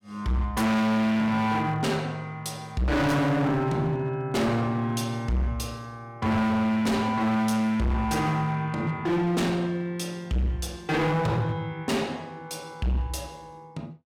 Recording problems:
distorted audio; hard clipping, signal-to-distortion ratio 6 dB

